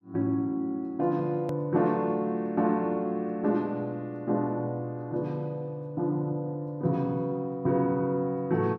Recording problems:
edit click; at 1.5 s

